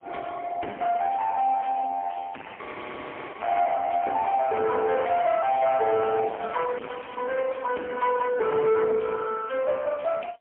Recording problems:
phone line; 280 Hz to 3.2 kHz, AMR-NB, then MP3
distorted audio; soft clipping, signal-to-distortion ratio 8 dB
audio freezing; at 2.5 s for 0.5 s

